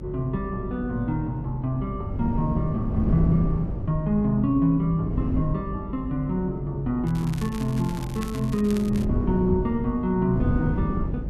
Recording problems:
hum; 50 Hz, harmonics up to 550 Hz, SNR 13 dB
wind noise; below 190 Hz, SNR 6 dB
crackle; from 7 to 9 s; loose cable, SNR 17 dB

